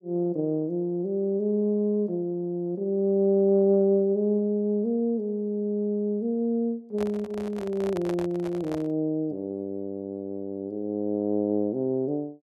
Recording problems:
handling noise; from 7 to 9 s; peak -5 dB vs average level

